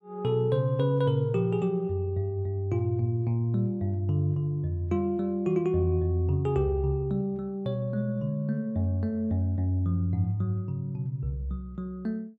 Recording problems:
none

